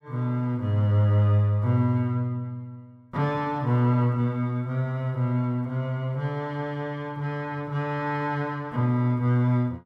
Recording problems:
none

